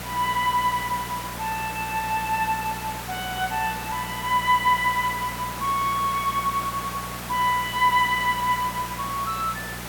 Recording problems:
electrical hum; 60 Hz, harmonics up to 600 Hz, SNR 16 dB
hiss; slope -3 dB per octave, SNR 9 dB

